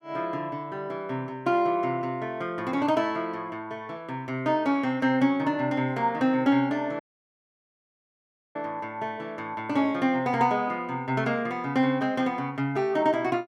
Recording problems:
dropout; at 7 s for 1.5 s

